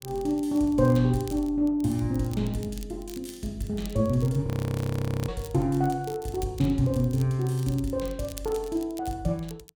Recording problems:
crackle; vinyl, SNR 21 dB
audio freezing; at 4.5 s for 1 s

